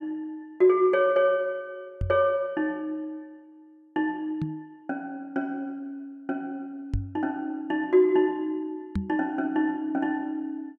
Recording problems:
microphone bump; 4 times, first at 2 s; peak +2 dB vs average level

